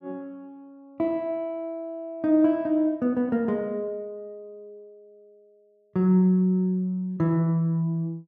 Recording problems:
none

